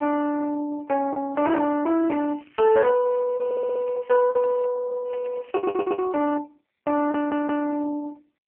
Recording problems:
telephone audio; 340 Hz to 2.9 kHz, AMR-NB
distorted audio; hard clipping, signal-to-distortion ratio 14 dB
lost packets; 3% of the sound replaced, filled with the last packet
crackle; from 1.5 to 4.5 s and at 5 s; loose cable, SNR 27 dB
audio stuttering; at 3.5 s, at 5.5 s and at 7 s

